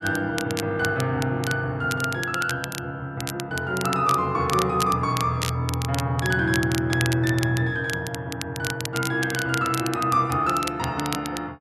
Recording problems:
crackle; vinyl, SNR 10 dB

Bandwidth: 13 kHz